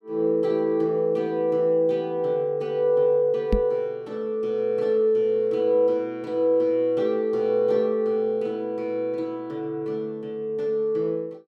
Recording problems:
knock on the microphone; at 3.5 s; peak +4 dB vs average level

